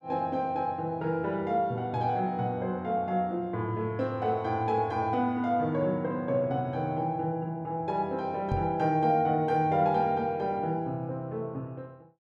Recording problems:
microphone thump; at 8.5 s; peak +2 dB vs average level

